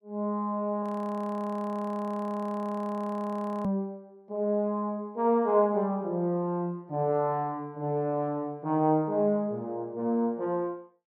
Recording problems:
audio freezing; at 1 s for 3 s

